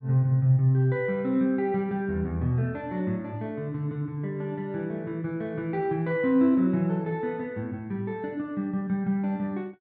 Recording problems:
none

